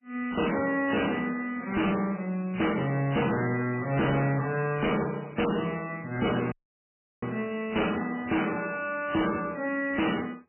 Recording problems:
lossy codec; MP3, log-spectral distance 10 dB, nothing above 3 kHz
distorted audio; hard clipping, signal-to-distortion ratio 7 dB
audio cutting out; at 6.5 s for 0.5 s

